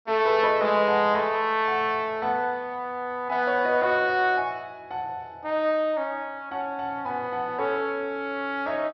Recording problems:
low-pass filter; nothing above 5.9 kHz

